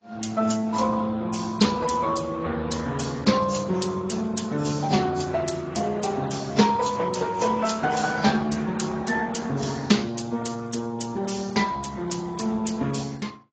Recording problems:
lossy compression; Speex, then AAC, log-spectral distance 6 dB, nothing above 7.6 kHz

